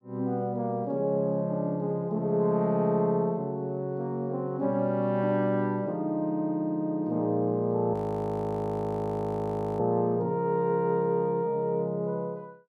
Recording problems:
audio freezing; at 8 s for 2 s

